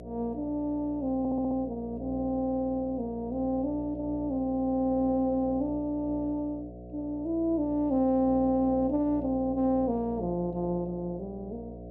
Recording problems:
hum; 60 Hz, harmonics up to 720 Hz, SNR 13 dB
stutter; at 1 s

